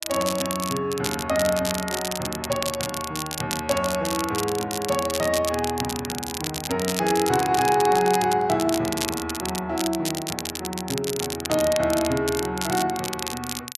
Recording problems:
crackle; vinyl, SNR 6 dB

